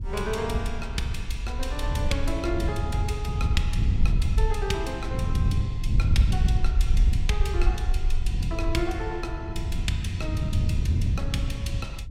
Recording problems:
low-frequency rumble; below 58 Hz, SNR -2 dB
wind noise; below 120 Hz, SNR -3 dB

